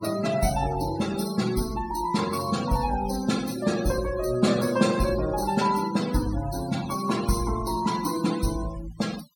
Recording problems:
denoising artefacts; signal-to-artefact ratio 12 dB

